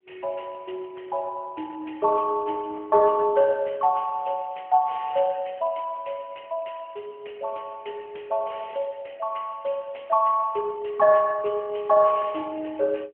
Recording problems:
phone line; 320 Hz to 3.1 kHz, AMR-NB

